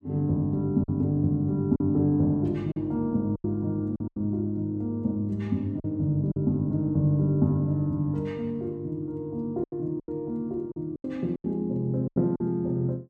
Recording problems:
packet loss; 7% of the sound replaced, filled with silence

